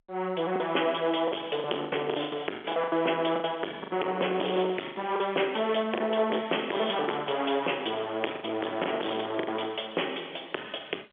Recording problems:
phone line; 280 Hz to 3.4 kHz, G.711
distortion; soft clipping, signal-to-distortion ratio 9 dB
lost packets; 10% of the sound replaced, filled with the last packet

